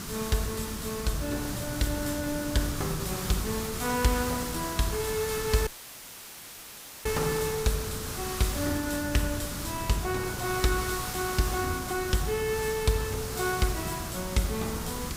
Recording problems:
background hiss; SNR 6 dB
wind noise; below 250 Hz, SNR 10 dB
dropout; at 5.5 s for 1.5 s

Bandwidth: 15.5 kHz